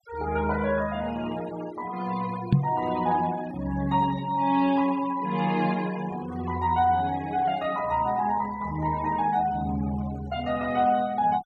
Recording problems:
denoising artefacts; signal-to-artefact ratio 18 dB
microphone bump; at 2.5 s; peak +9 dB vs average level

